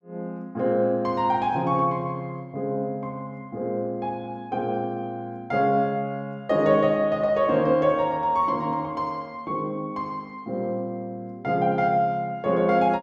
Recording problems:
none

